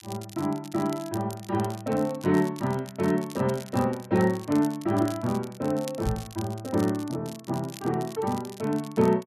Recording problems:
crackling; vinyl, SNR 18 dB
knock on the microphone; at 6 s; peak +1 dB vs average level

